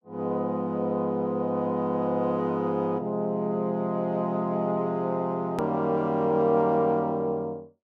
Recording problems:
click at an edit; at 5.5 s

